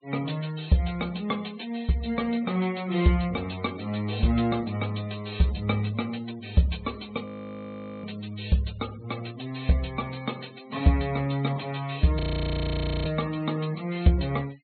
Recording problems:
treble cut off; nothing above 4.3 kHz
denoising artefacts; signal-to-artefact ratio 22 dB
audio freezing; at 7.5 s for 1 s and at 12 s for 1 s

